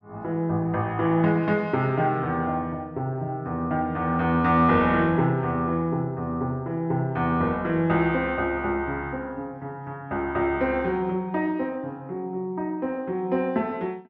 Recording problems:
none

